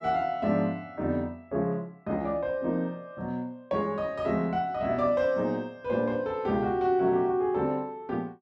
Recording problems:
none

